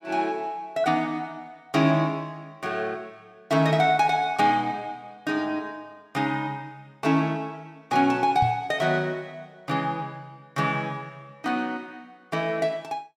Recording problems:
microphone bump; at 8.5 s; peak +1 dB vs average level

